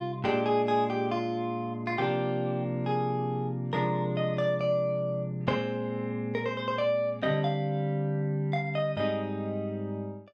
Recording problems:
none

